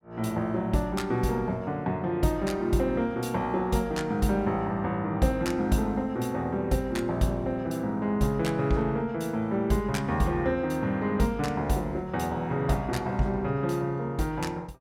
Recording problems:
none

